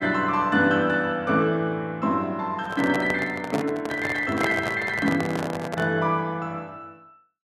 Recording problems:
handling noise; from 2.5 to 6 s; peak +2 dB vs average level

